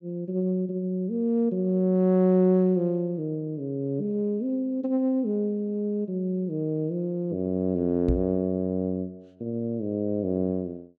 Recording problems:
knock on the microphone; at 8 s; peak +3 dB vs average level

